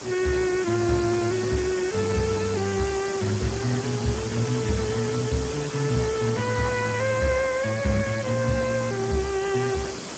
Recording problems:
lossy compression; Speex, log-spectral distance 13 dB
mains hum; 60 Hz, harmonics up to 900 Hz, SNR 22 dB
background hiss; SNR 10 dB

